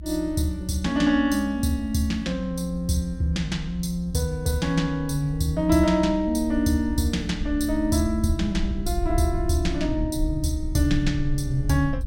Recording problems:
low-frequency rumble; below 64 Hz, SNR 9 dB

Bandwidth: 16.5 kHz